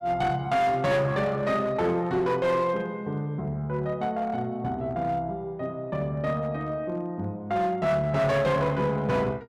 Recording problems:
distorted audio; hard clipping, uneven, signal-to-distortion ratio 10 dB

